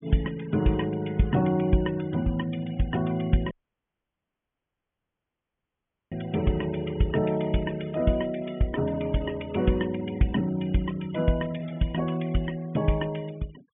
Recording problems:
treble missing; nothing above 3.4 kHz
denoising artefacts; signal-to-artefact ratio 22 dB
audio cutting out; at 3.5 s for 2.5 s

